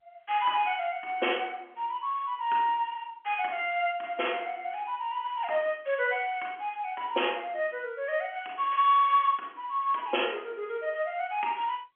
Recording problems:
telephone audio; 280 Hz to 3.3 kHz, G.711

